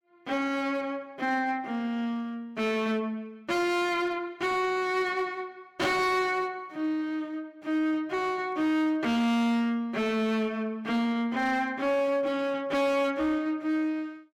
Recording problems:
distorted audio; hard clipping, signal-to-distortion ratio 11 dB

